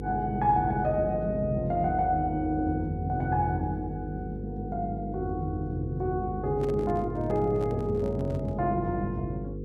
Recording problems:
hum; 50 Hz, harmonics up to 500 Hz, SNR 8 dB
handling noise; from 6.5 to 8.5 s; peak -9 dB vs average level

